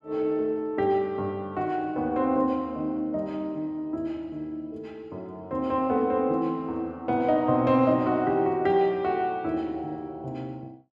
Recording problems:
none

